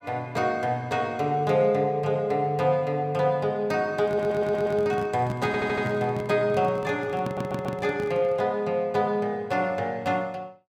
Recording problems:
microphone handling noise; from 4 to 8.5 s; peak -3 dB vs average level
stutter; at 4 s, at 5.5 s and at 7 s

